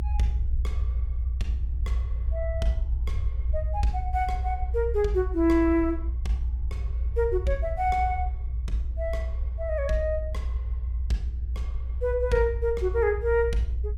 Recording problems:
rumble; below 62 Hz, strongest tone 60 Hz, SNR 2 dB

